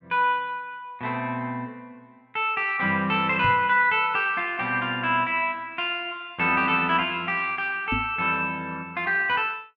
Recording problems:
knock on the microphone; at 3.5 s and at 8 s; peak -2 dB vs average level

